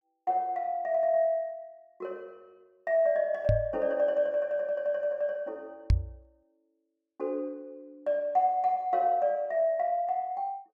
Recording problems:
microphone thump; at 3.5 s and at 6 s; peak +7 dB vs average level

